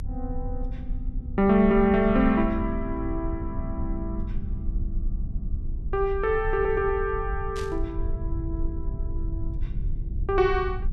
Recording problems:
rumble; below 68 Hz, strongest tone 28 Hz, SNR 8 dB
burst of static; at 7.5 s; peak -11 dB vs average level

